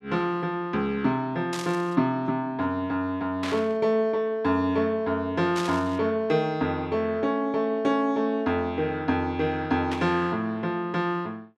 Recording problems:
static burst; 4 times, first at 1.5 s; peak -4 dB vs average level

